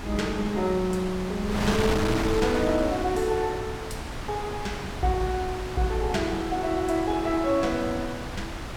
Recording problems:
wind noise; below 1.4 kHz, SNR 6 dB

